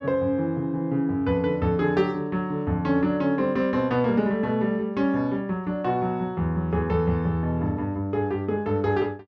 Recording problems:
none

